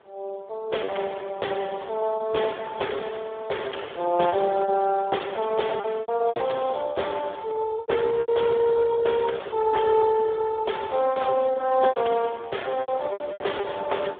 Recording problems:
telephone audio; 320 Hz to 3.6 kHz, Speex
wind noise; below 930 Hz, SNR 16 dB
packet loss; 7% of the sound replaced, filled with repeated pitch periods

